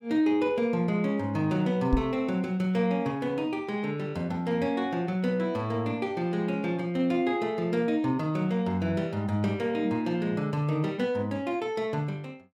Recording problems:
knock on the microphone; at 2 s; peak +5 dB vs average level

